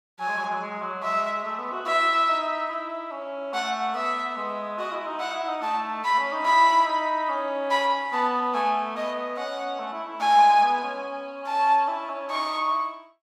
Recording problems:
none

